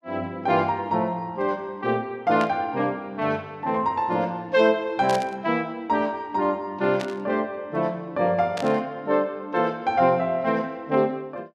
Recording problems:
static burst; 4 times, first at 2.5 s; peak -5 dB vs average level

